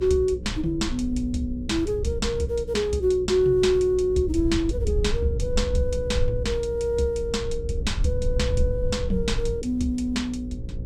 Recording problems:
electrical hum; 60 Hz, harmonics up to 540 Hz, SNR 12 dB
low-frequency rumble; below 82 Hz, SNR 8 dB

